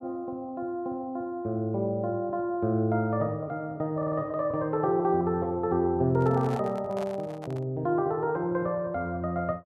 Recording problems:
audio stuttering; at 4 s
handling noise; from 6 to 7.5 s; peak -6 dB vs average level

